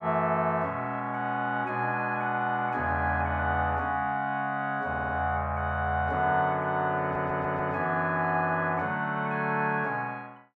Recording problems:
audio stuttering; at 5 s and at 7 s

